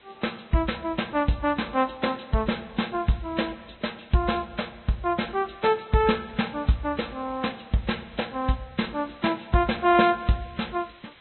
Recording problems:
treble cut off; nothing above 4 kHz
lossy compression; Vorbis, log-spectral distance 9 dB
hiss; SNR 28 dB

